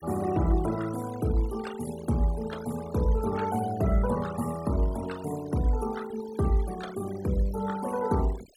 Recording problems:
noise reduction artefacts; signal-to-artefact ratio 17 dB

